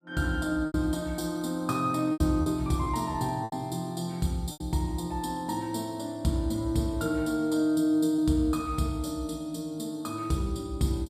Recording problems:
packet loss; 4% of the sound replaced, filled with repeated pitch periods

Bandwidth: 14.5 kHz